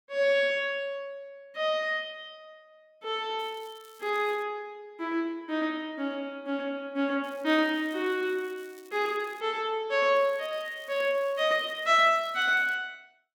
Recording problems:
crackling; from 3.5 to 4.5 s, from 7 to 9.5 s and from 10 to 13 s; loose cable, SNR 28 dB

